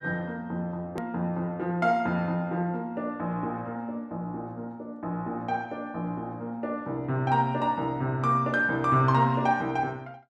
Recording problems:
click at an edit; at 1 s

